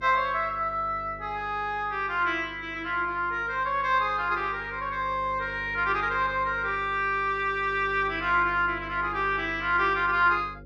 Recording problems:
hum; 50 Hz, harmonics up to 550 Hz, SNR 19 dB

